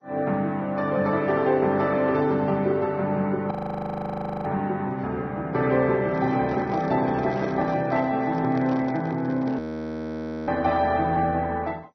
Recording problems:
codec artefacts; MP2, then Vorbis, log-spectral distance 2 dB
frozen audio; at 3.5 s for 1 s and at 9.5 s for 1 s
handling noise; from 6 to 9.5 s; peak -7 dB vs average level

